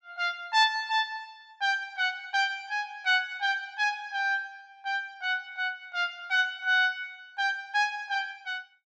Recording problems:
none

